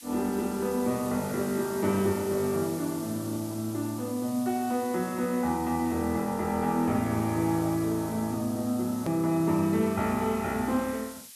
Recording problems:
hiss; slope +5 dB per octave, SNR 15 dB
click at an edit; at 9 s

